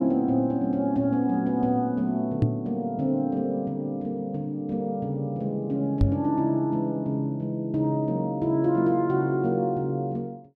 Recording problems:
microphone bump; at 2.5 s and at 6 s; peak +7 dB vs average level

